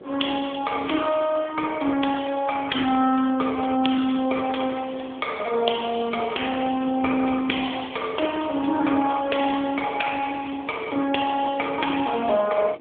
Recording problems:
telephone audio; 320 Hz to 3.5 kHz, AMR-NB
wind on the microphone; below 520 Hz, SNR 20 dB

